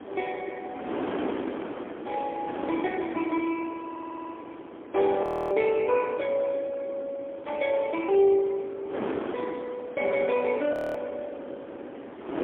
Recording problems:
telephone audio; 260 Hz to 3.3 kHz, AMR-NB, then MP3
wind on the microphone; below 710 Hz, SNR 10 dB
stutter; at 4 s
audio freezing; at 5 s and at 11 s

